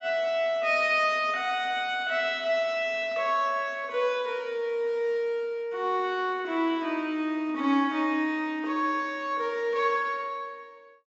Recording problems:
low-pass filter; nothing above 8 kHz

